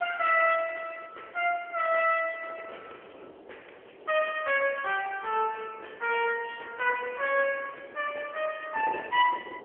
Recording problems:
phone line; 390 Hz to 3.3 kHz, AMR-NB
wind noise; below 680 Hz, SNR 20 dB

